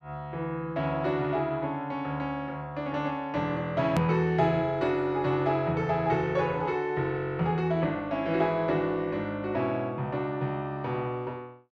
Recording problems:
edit click; at 4 s

